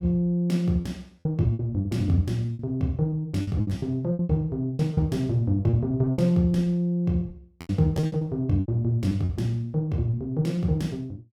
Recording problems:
lost packets; 12% of the sound replaced, filled with repeated pitch periods

